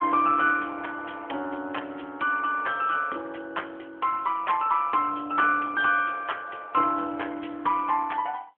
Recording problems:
phone line; 300 Hz to 3.3 kHz, AMR-NB

